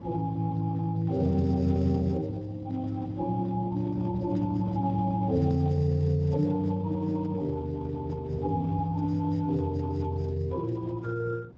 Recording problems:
lossy codec; MP3, then Speex, log-spectral distance 2 dB
wind noise; below 280 Hz, SNR 17 dB

